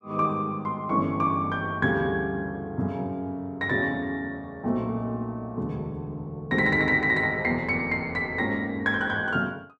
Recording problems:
none

